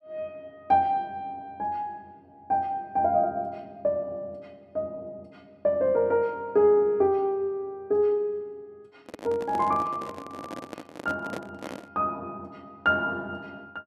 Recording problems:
microphone handling noise; from 9 to 12 s; peak -5 dB vs average level

